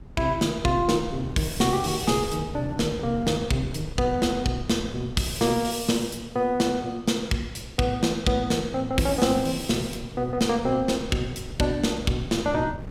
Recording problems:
wind noise; below 200 Hz, SNR 15 dB

